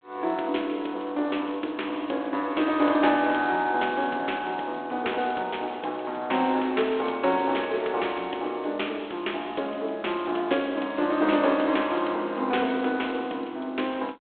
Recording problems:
telephone audio; 260 Hz to 3.5 kHz, G.726

